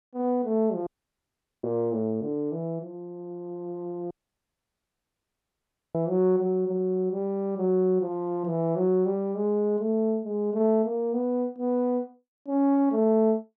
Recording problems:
dropout; at 1 s for 1 s and at 4 s for 2 s

